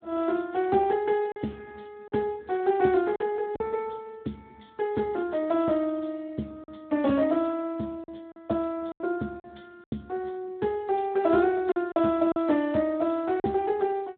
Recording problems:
telephone audio; 150 Hz to 3.4 kHz, Speex
packet loss; 5% of the sound replaced, filled with silence

